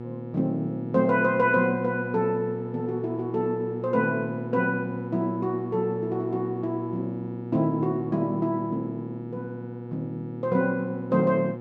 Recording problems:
electrical hum; 60 Hz, harmonics up to 1.3 kHz, SNR 9 dB

